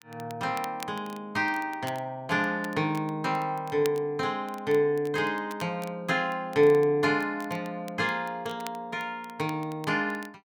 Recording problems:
crackle; vinyl, SNR 21 dB

